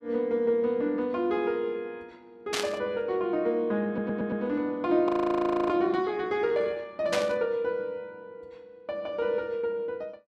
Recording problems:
burst of static; at 2.5 s and at 7 s; peak +3 dB vs average level
stutter; at 4 s
frozen audio; at 5 s for 0.5 s

